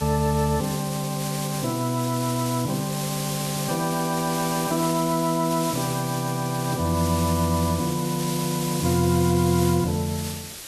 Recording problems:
hiss; SNR 8 dB

